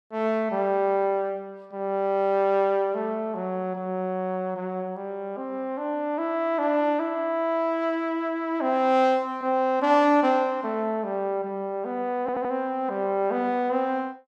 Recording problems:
audio stuttering; at 12 s

